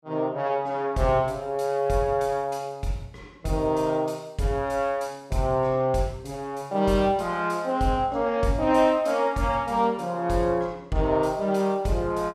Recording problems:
none

